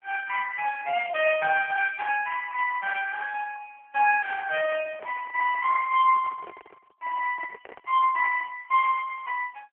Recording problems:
telephone audio; 280 Hz to 3 kHz, AMR-NB
microphone handling noise; from 4.5 to 8.5 s; peak -14 dB vs average level

